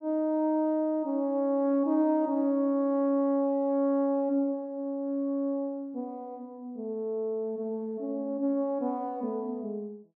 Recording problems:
none

